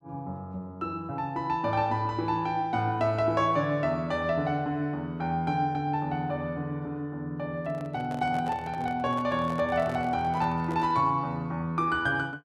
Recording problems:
microphone handling noise; from 7.5 to 11 s; peak -9 dB vs average level

